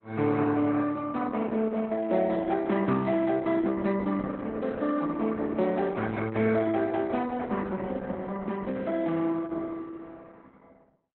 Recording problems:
codec artefacts; Opus, log-spectral distance 3 dB, nothing above 3.9 kHz

